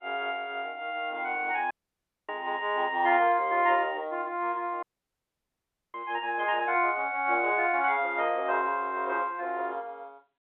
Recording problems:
phone line; 280 Hz to 3.7 kHz, G.711
audio cutting out; at 1.5 s for 0.5 s and at 5 s for 1 s

